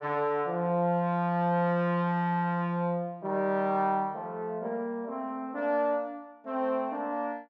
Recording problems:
none

